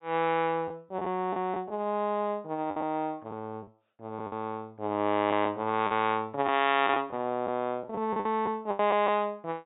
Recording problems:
low-pass filter; nothing above 4 kHz
lost packets; 7% of the sound replaced, filled with the last packet

